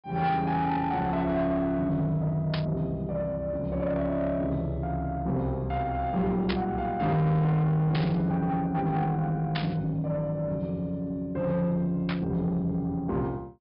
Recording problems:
treble missing; nothing above 5.5 kHz
distorted audio; soft clipping, signal-to-distortion ratio 10 dB
burst of static; 5 times, first at 2.5 s; peak -1 dB vs average level

